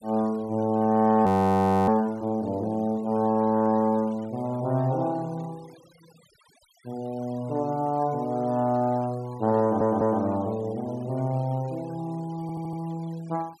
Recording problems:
denoising artefacts; signal-to-artefact ratio 27 dB
frozen audio; at 1.5 s for 0.5 s
stutter; at 9.5 s and at 12 s

